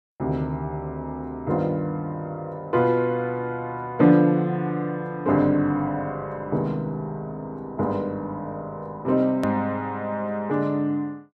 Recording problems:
edit click; at 9.5 s

